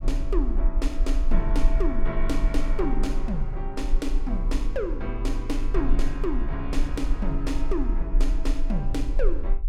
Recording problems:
rumble; below 36 Hz, strongest tone 20 Hz, SNR -2 dB

